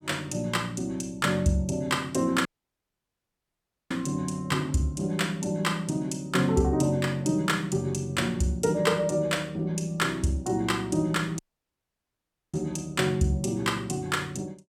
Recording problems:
audio cutting out; at 2.5 s for 1.5 s and at 11 s for 1 s

